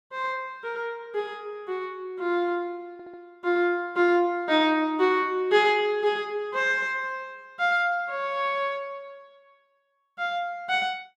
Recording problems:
audio stuttering; at 3 s

